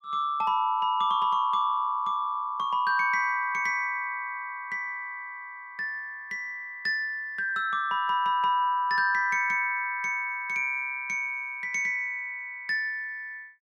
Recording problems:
none

